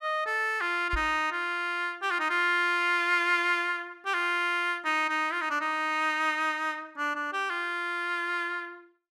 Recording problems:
knock on the microphone; at 1 s; peak -3 dB vs average level

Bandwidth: 14 kHz